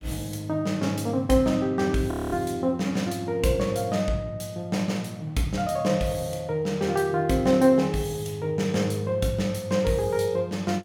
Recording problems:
frozen audio; at 2 s

